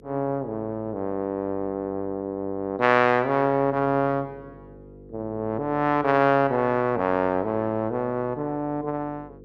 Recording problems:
hum; 50 Hz, harmonics up to 500 Hz, SNR 24 dB

